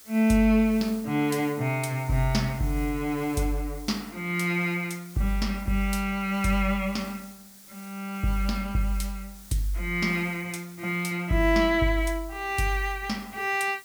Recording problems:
background hiss; SNR 20 dB

